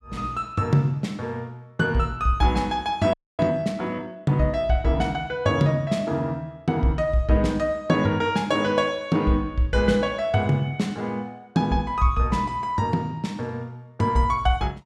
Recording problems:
frozen audio; at 3 s

